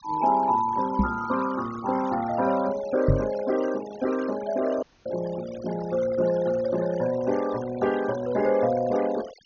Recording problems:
treble cut off; nothing above 6.7 kHz
denoising artefacts; signal-to-artefact ratio 16 dB
microphone thump; at 1 s and at 3 s; peak +7 dB vs average level
dropout; at 5 s

